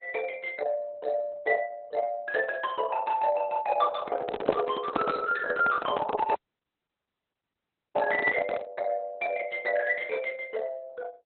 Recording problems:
codec artefacts; Opus, log-spectral distance 3 dB, nothing above 3.6 kHz
handling noise; from 4 to 8.5 s; peak +3 dB vs average level
dropout; at 6.5 s for 1.5 s

